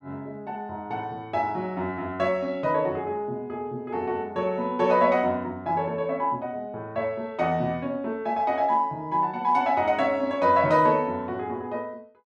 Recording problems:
none

